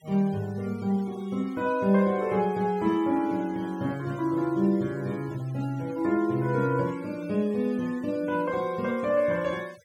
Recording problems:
denoising artefacts; signal-to-artefact ratio 24 dB

